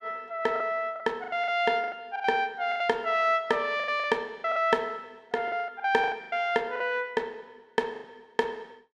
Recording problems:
lost packets; 13% of the sound replaced, filled with the last packet

